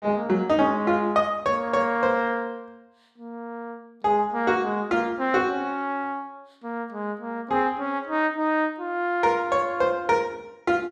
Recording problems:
none

